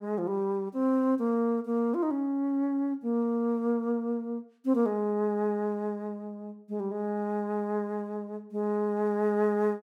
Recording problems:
none

